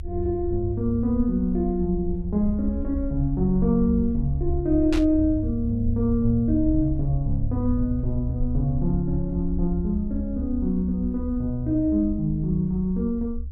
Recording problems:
rumble; below 72 Hz, SNR 8 dB
static burst; at 5 s; peak -5 dB vs average level

